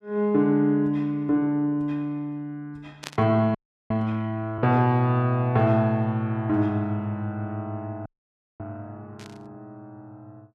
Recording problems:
static burst; at 3 s and at 9 s; peak -6 dB vs average level
audio freezing; at 3.5 s and at 8 s for 0.5 s

